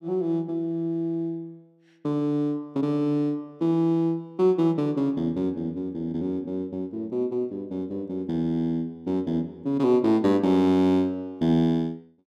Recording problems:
none

